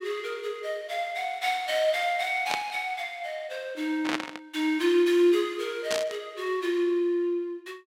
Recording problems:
static burst; at 2.5 s, at 4 s and at 6 s; peak +2 dB vs average level

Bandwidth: 16 kHz